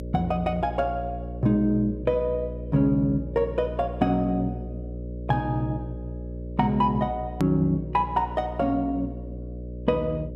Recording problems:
electrical hum; 60 Hz, harmonics up to 600 Hz, SNR 10 dB
click at an edit; at 7.5 s

